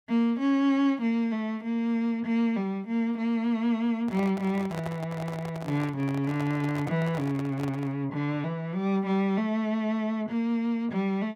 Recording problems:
microphone handling noise; from 4 to 8 s; peak -5 dB vs average level

